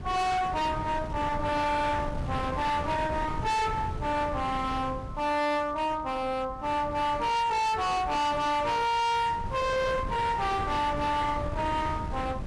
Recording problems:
lossy compression; AAC, log-spectral distance 2 dB, nothing above 11.3 kHz
distorted audio; hard clipping, signal-to-distortion ratio 6 dB
wind on the microphone; below 360 Hz, SNR 9 dB

